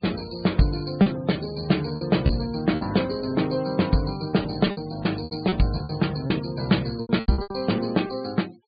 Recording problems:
low-pass filter; nothing above 4.8 kHz
denoising artefacts; signal-to-artefact ratio 21 dB
lost packets; 9% of the sound replaced, filled with repeated pitch periods

